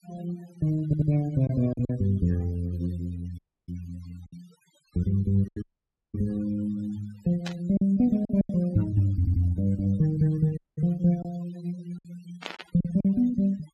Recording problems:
noise reduction artefacts; signal-to-artefact ratio 24 dB
packet loss; 5% of the sound replaced, filled with silence
stutter; at 1 s and at 9 s
dropout; at 3.5 s, at 5.5 s for 0.5 s and at 11 s
static burst; at 7.5 s and at 12 s; peak -4 dB vs average level

